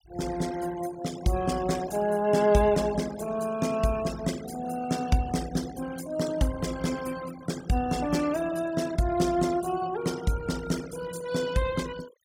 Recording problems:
denoising artefacts; signal-to-artefact ratio 15 dB

